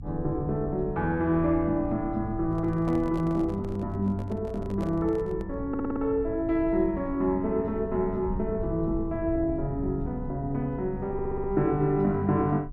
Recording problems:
low-frequency rumble; below 110 Hz, SNR 13 dB
microphone handling noise; from 2.5 to 5.5 s; peak -9 dB vs average level
stutter; at 5.5 s and at 11 s

